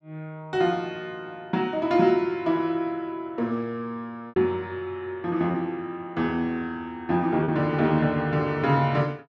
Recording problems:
lost packets; 1.5% of the sound replaced, filled with repeated pitch periods

